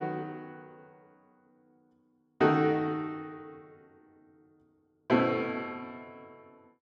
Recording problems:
none

